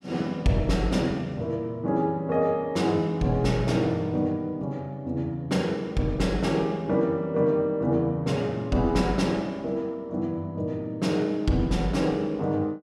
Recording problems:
none

